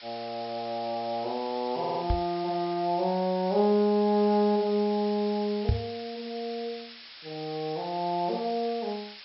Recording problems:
treble missing; nothing above 5.4 kHz
background hiss; SNR 15 dB
audio stuttering; at 2 s
microphone bump; at 2 s and at 5.5 s; peak +6 dB vs average level

